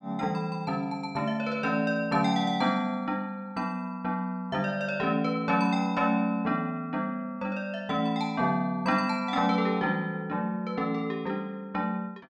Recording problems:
none

